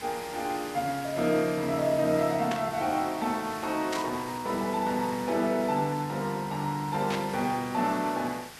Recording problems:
hiss; slope -1 dB per octave, SNR 14 dB
static burst; at 2.5 s, at 4 s and at 7 s; peak -2 dB vs average level

